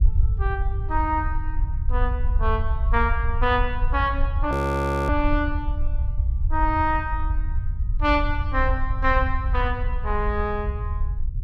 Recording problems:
rumble; below 72 Hz, SNR 1 dB
audio freezing; at 4.5 s for 0.5 s

